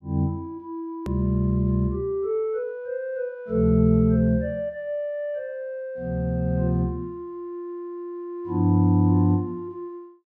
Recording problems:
hard cut with a click; at 1 s

